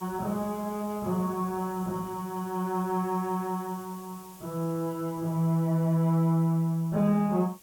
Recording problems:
background hiss; SNR 21 dB

